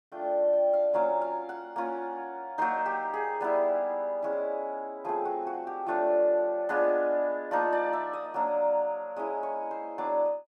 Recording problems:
none

